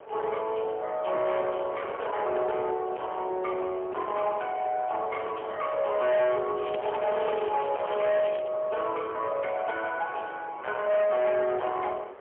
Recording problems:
phone line; 340 Hz to 3.3 kHz, AMR-NB, then MP3
distorted audio; soft clipping, signal-to-distortion ratio 9 dB
wind on the microphone; below 1 kHz, SNR 15 dB
crackling; from 6.5 to 8.5 s; loose cable, SNR 17 dB

